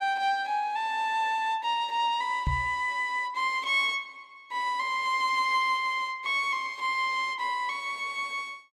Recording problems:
microphone bump; at 2.5 s; peak +2 dB vs average level

